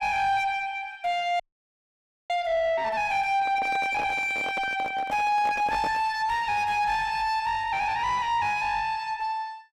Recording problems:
distorted audio; soft clipping, signal-to-distortion ratio 9 dB
frozen audio; at 1.5 s for 1 s
handling noise; from 3.5 to 6 s; peak -4 dB vs average level

